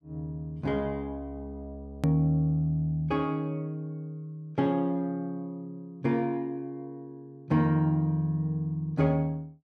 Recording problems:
click at an edit; at 2 s

